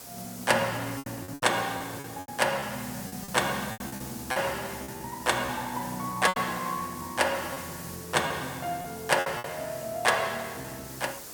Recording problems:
hiss; SNR 12 dB
lost packets; 9% of the sound replaced, filled with repeated pitch periods

